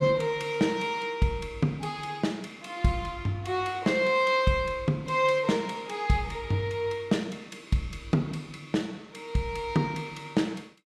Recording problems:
none

